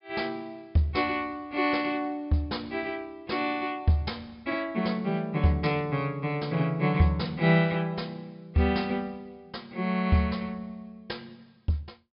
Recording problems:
low-pass filter; nothing above 5.5 kHz

